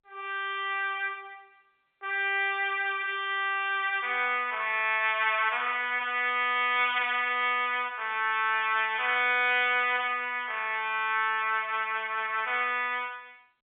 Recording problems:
telephone audio; 280 Hz to 3.6 kHz, G.711

